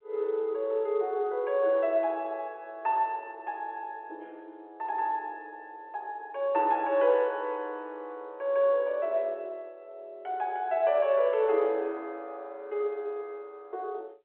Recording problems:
telephone audio; 340 Hz to 3.4 kHz, G.711

